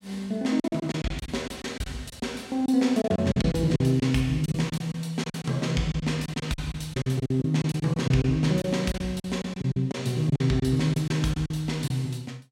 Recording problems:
packet loss; 13% of the sound replaced, filled with silence

